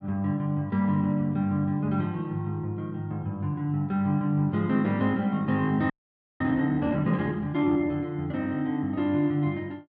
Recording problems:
frozen audio; at 6 s for 0.5 s

